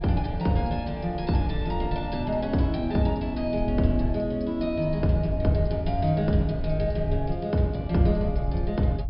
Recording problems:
treble missing; nothing above 5.5 kHz
wind noise; below 76 Hz, SNR 9 dB

